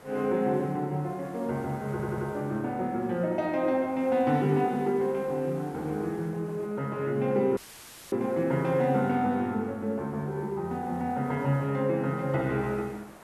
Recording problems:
background hiss; SNR 22 dB
stutter; at 2 s
audio cutting out; at 7.5 s for 0.5 s; filled with static

